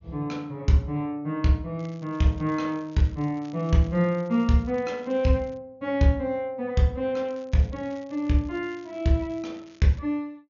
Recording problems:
treble cut off; nothing above 6.8 kHz
crackling; from 2 to 5.5 s and from 7.5 to 10 s; loose cable, SNR 30 dB

